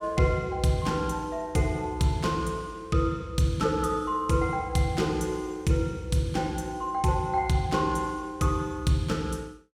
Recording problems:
none

